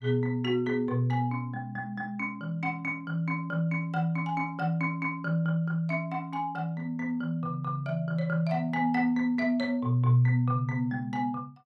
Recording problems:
none

